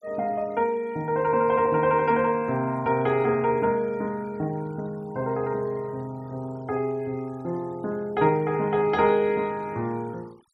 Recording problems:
denoising artefacts; signal-to-artefact ratio 28 dB

